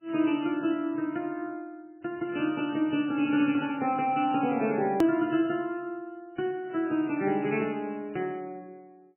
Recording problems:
lossy codec; MP3, log-spectral distance 3 dB, nothing above 2.7 kHz
click at an edit; at 5 s

